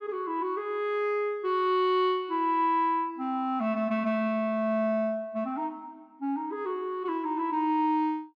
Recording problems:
none

